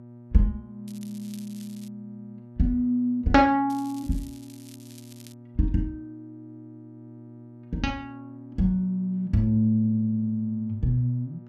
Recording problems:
electrical hum; 60 Hz, harmonics up to 960 Hz, SNR 20 dB
crackling; from 1 to 2 s and from 3.5 to 5.5 s; loose cable, SNR 24 dB

